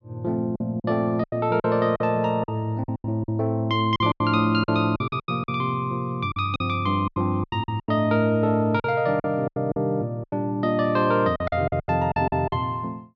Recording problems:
packet loss; 14% of the sound replaced, filled with silence

